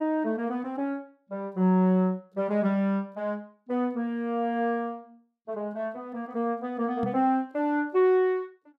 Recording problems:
microphone bump; at 7 s; peak -1 dB vs average level

